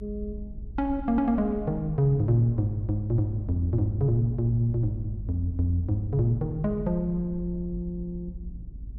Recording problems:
rumble; below 64 Hz, strongest tone 48 Hz, SNR 13 dB

